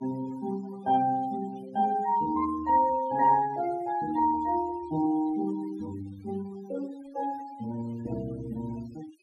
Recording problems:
denoising artefacts; signal-to-artefact ratio 18 dB

